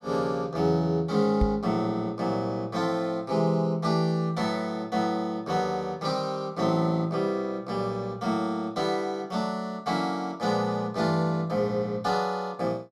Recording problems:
microphone bump; at 1.5 s; peak +5 dB vs average level

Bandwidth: 15.5 kHz